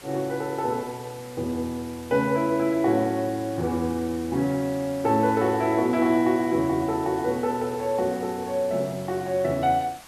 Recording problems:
background hiss; slope -1 dB per octave, SNR 20 dB

